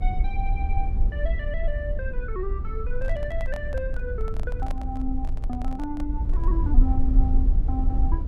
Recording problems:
hum; 50 Hz, harmonics up to 450 Hz, SNR 15 dB
low-frequency rumble; below 54 Hz, SNR -6 dB
microphone handling noise; from 3 to 6.5 s; peak 0 dB vs average level

